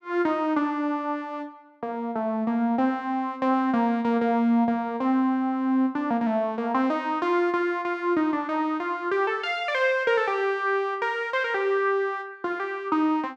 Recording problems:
none

